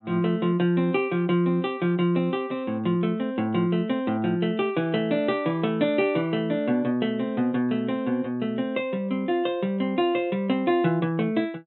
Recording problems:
low-pass filter; nothing above 4 kHz

